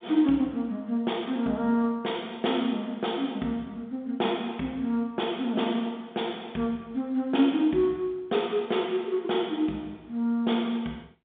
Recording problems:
phone line; 170 Hz to 3.7 kHz, G.711

